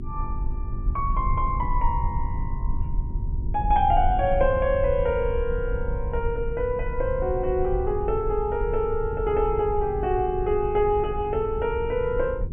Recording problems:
low-pass filter; nothing above 3.4 kHz
hum; 50 Hz, harmonics up to 400 Hz, SNR 18 dB
rumble; below 68 Hz, SNR 6 dB

